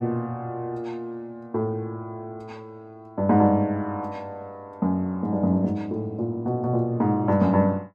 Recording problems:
none

